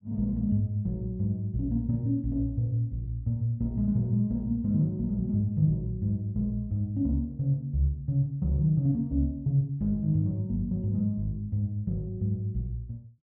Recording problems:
none

